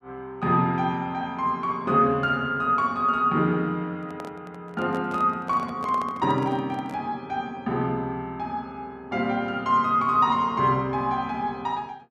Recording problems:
microphone handling noise; from 4 to 7 s; peak -9 dB vs average level

